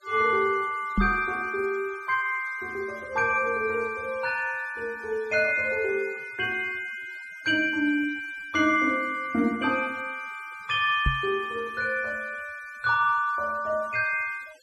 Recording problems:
noise reduction artefacts; signal-to-artefact ratio 25 dB
microphone thump; at 1 s and at 11 s; peak +5 dB vs average level

